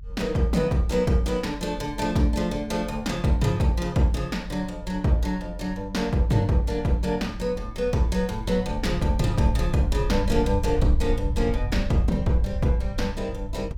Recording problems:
low-frequency rumble; below 74 Hz, SNR 8 dB

